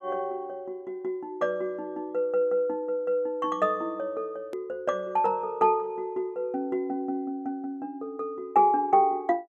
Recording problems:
click at an edit; at 4.5 s

